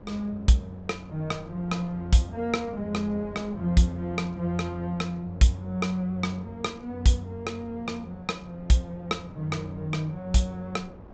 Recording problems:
treble cut off; nothing above 8 kHz
wind on the microphone; below 470 Hz, SNR 20 dB

